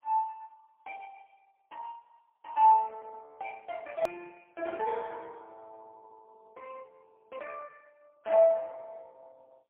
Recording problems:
telephone audio; 190 Hz to 3.3 kHz, AMR-NB, then MP3
click at an edit; at 4 s

